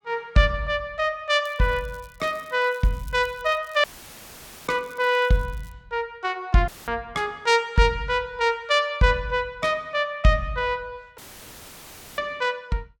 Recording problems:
crackling; from 1.5 to 5.5 s; loose cable, SNR 28 dB
dropout; at 4 s for 1 s, at 6.5 s and at 11 s for 1 s; filled with static

